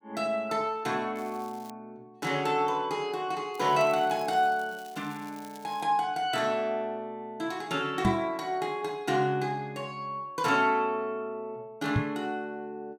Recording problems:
crackle; at 1 s and from 3.5 to 6 s; loose cable, SNR 23 dB
knock on the microphone; at 8 s and at 12 s; peak +6 dB vs average level

